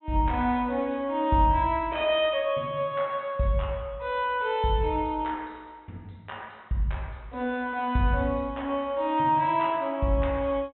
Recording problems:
treble missing; nothing above 3.6 kHz

